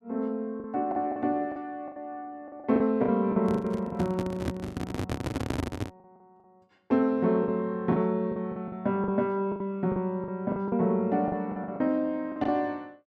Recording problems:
packet loss; 12% of the sound replaced, filled with the last packet
handling noise; from 3.5 to 6 s; peak +2 dB vs average level

